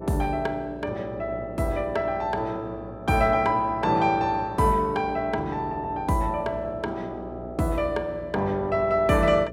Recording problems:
hum; 60 Hz, harmonics up to 660 Hz, SNR 14 dB

